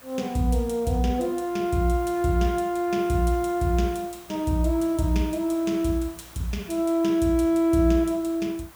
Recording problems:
background hiss; SNR 22 dB

